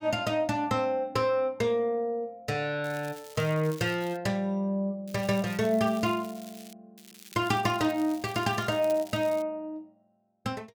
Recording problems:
crackle; from 3 to 4 s, from 5 to 6.5 s and from 7 to 9.5 s; loose cable, SNR 20 dB

